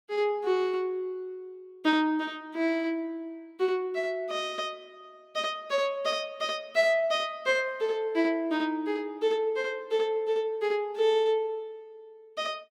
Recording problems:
none

